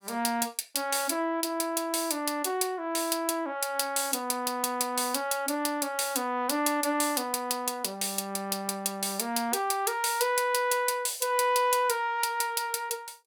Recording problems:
none

